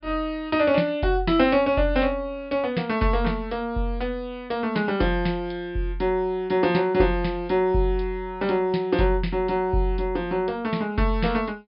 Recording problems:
low-pass filter; nothing above 5.2 kHz

